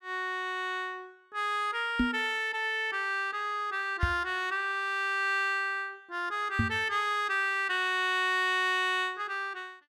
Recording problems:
microphone thump; at 2 s, at 4 s and at 6.5 s; peak +5 dB vs average level

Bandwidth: 14.5 kHz